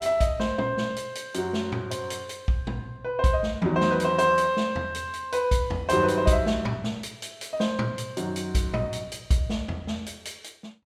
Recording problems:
none

